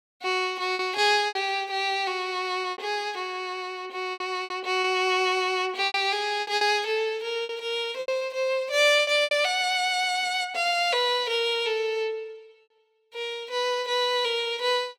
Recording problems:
lost packets; 7% of the sound replaced, filled with repeated pitch periods

